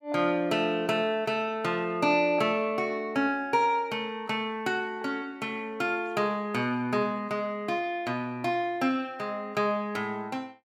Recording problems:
none

